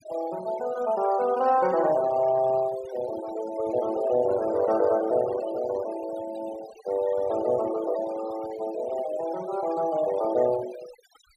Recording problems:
noise reduction artefacts; signal-to-artefact ratio 16 dB

